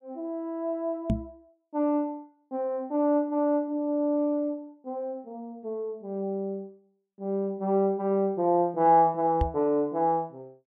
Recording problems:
knock on the microphone; at 1 s and at 9.5 s; peak +4 dB vs average level

